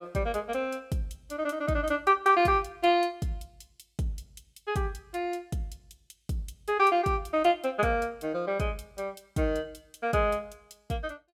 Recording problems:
none

